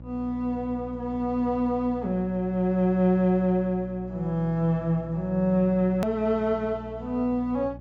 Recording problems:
treble missing; nothing above 7.6 kHz
mains hum; 60 Hz, harmonics up to 600 Hz, SNR 17 dB
click at an edit; at 6 s

